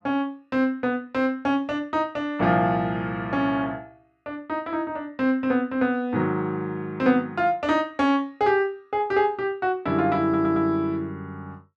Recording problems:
stutter; at 10 s

